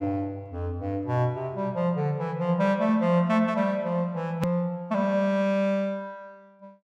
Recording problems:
click at an edit; at 4.5 s

